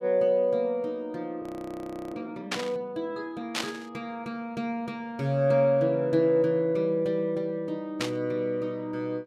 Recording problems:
frozen audio; at 1.5 s for 0.5 s
static burst; at 2.5 s, at 3.5 s and at 8 s; peak +3 dB vs average level

